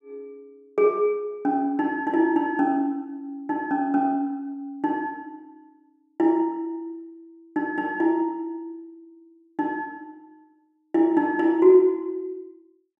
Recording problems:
none

